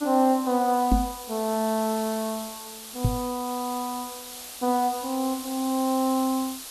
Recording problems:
background hiss; SNR 11 dB
knock on the microphone; at 1 s and at 3 s; peak +7 dB vs average level

